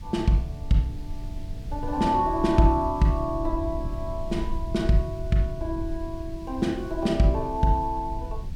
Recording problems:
background hiss; slope -1 dB per octave, SNR 28 dB
rumble; below 78 Hz, SNR 10 dB

